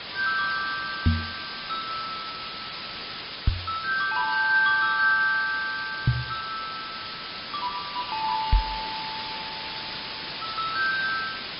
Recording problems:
treble cut off; nothing above 4.5 kHz
lossy compression; MP3, then MP3, log-spectral distance 20 dB
hiss; SNR 7 dB
microphone thump; 4 times, first at 1 s; peak +8 dB vs average level

